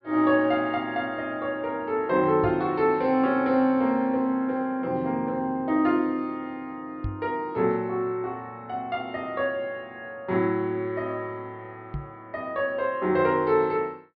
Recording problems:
low-pass filter; nothing above 5.5 kHz
knock on the microphone; at 2.5 s, at 7 s and at 12 s; peak -3 dB vs average level

